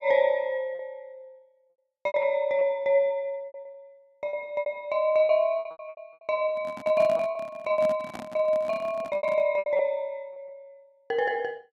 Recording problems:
lost packets; 11% of the sound replaced, filled with repeated pitch periods
microphone handling noise; from 6.5 to 9.5 s; peak -7 dB vs average level

